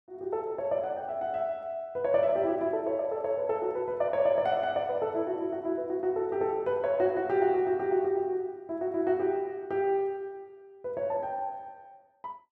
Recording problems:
none

